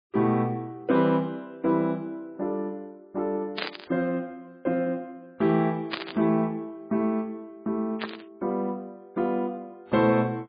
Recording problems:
lossy compression; MP3, log-spectral distance 2 dB
static burst; at 3.5 s, at 6 s and at 8 s; peak +1 dB vs average level

